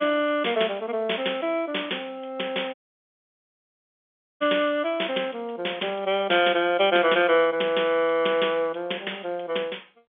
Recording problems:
phone line; 240 Hz to 3.5 kHz, G.711
dropout; at 2.5 s for 1.5 s

